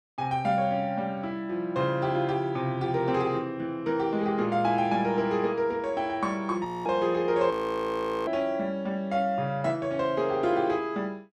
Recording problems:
frozen audio; at 6.5 s and at 7.5 s for 1 s

